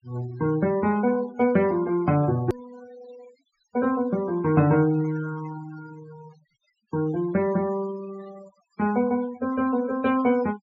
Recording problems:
treble missing; nothing above 8 kHz
denoising artefacts; signal-to-artefact ratio 19 dB
click at an edit; at 2.5 s

